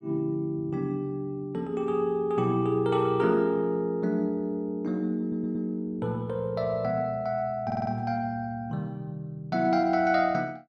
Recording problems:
audio stuttering; at 5 s and at 7.5 s

